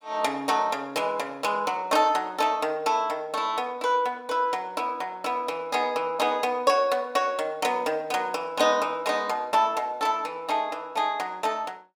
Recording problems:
none

